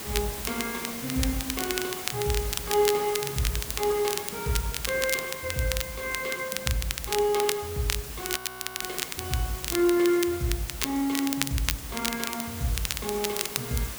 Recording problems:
hiss; slope -2 dB per octave, SNR 7 dB
crackling; vinyl, SNR 3 dB
frozen audio; at 8.5 s

